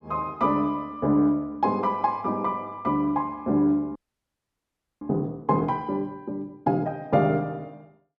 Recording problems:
frozen audio; at 4 s for 1 s

